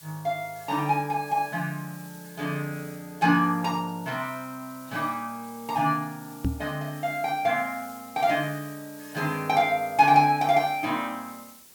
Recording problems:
hiss; slope 0 dB per octave, SNR 21 dB
microphone thump; at 6.5 s; peak +3 dB vs average level

